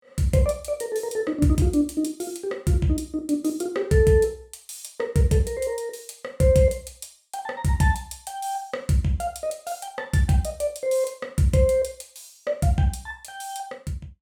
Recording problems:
none

